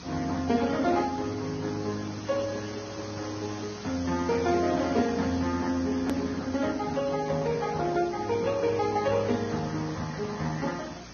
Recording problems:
lossy codec; Speex, then Vorbis, log-spectral distance 10 dB, nothing above 13.1 kHz
electrical hum; 60 Hz, harmonics up to 300 Hz, SNR 21 dB
background hiss; slope -2 dB per octave, SNR 15 dB
hard cut with a click; at 6 s

